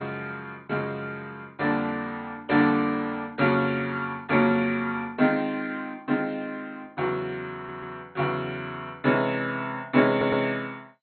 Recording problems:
codec artefacts; MP2, log-spectral distance 2 dB, nothing above 4.1 kHz
stutter; at 7.5 s and at 10 s

